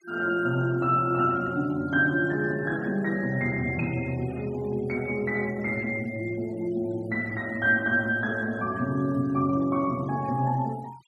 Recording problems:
noise reduction artefacts; signal-to-artefact ratio 25 dB

